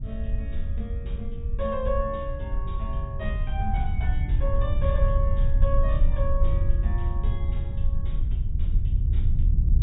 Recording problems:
low-pass filter; nothing above 4 kHz
rumble; below 72 Hz, SNR -7 dB

